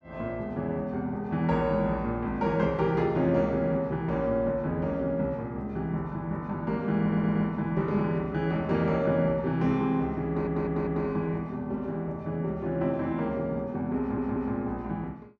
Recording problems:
audio stuttering; at 7 s, at 10 s and at 14 s

